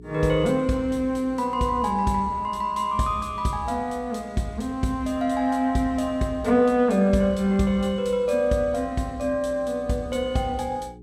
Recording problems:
hum; 60 Hz, harmonics up to 420 Hz, SNR 23 dB

